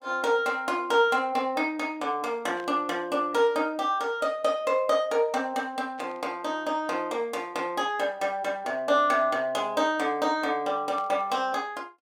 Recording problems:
static burst; at 2.5 s, at 6 s and at 11 s; peak -14 dB vs average level

